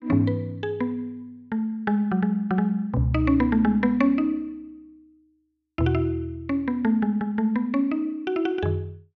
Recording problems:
none

